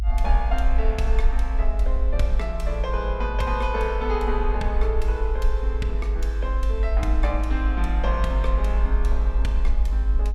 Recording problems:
low-frequency rumble; below 52 Hz, strongest tone 52 Hz, SNR -5 dB

